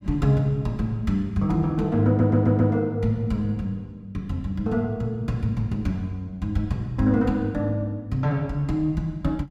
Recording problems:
audio stuttering; at 2 s

